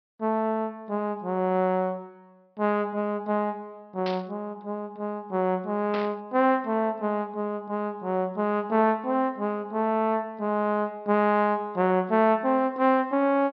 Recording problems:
treble missing; nothing above 5.5 kHz
static burst; at 4 s and at 6 s; peak -6 dB vs average level

